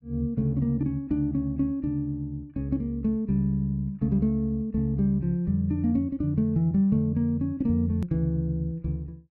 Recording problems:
hard cut with a click; at 8 s

